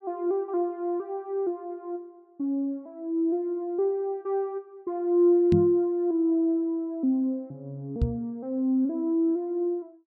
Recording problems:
knock on the microphone; at 5.5 s and at 8 s; peak +6 dB vs average level

